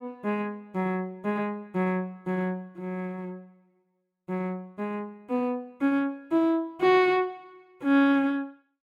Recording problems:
none

